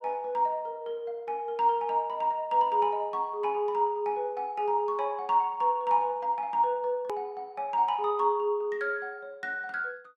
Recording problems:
click at an edit; at 7 s

